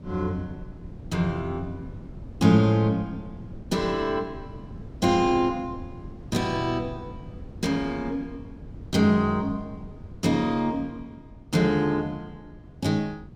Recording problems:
wind noise; below 210 Hz, SNR 17 dB

